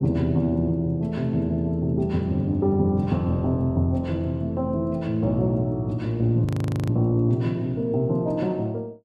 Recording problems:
audio freezing; at 6.5 s

